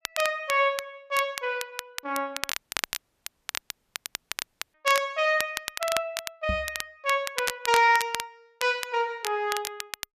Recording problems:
crackling; vinyl, SNR 8 dB
dropout; at 2.5 s for 2 s
knock on the microphone; at 6.5 s; peak -1 dB vs average level

